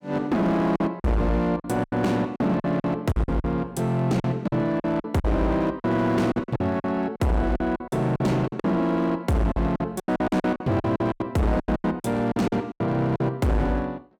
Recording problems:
distortion; hard clipping, signal-to-distortion ratio 8 dB
packet loss; 14% of the sound replaced, filled with silence

